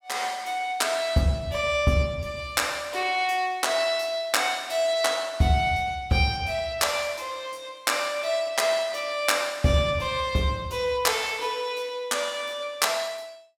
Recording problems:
none

